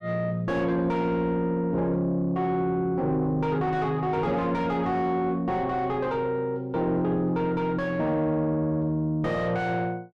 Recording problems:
distorted audio; soft clipping, signal-to-distortion ratio 8 dB

